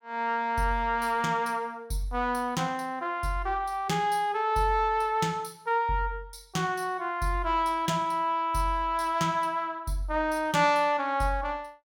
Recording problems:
none

